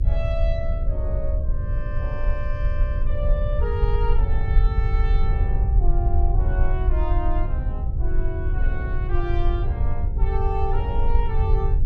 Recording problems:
hum; 60 Hz, harmonics up to 540 Hz, SNR 10 dB
rumble; below 64 Hz, SNR -8 dB

